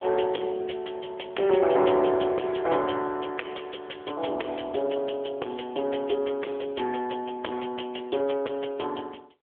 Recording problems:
phone line; 260 Hz to 3.4 kHz, AMR-NB
distorted audio; soft clipping, signal-to-distortion ratio 7 dB

